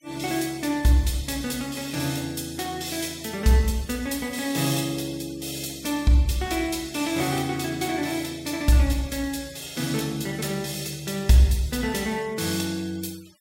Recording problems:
denoising artefacts; signal-to-artefact ratio 22 dB

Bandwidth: 16 kHz